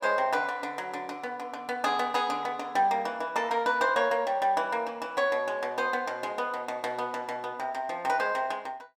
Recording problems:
none

